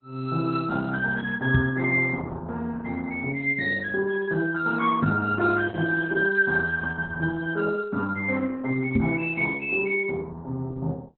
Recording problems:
lossy codec; Opus, log-spectral distance 3 dB, nothing above 4 kHz
microphone thump; at 1.5 s, at 5 s and at 9 s; peak +6 dB vs average level

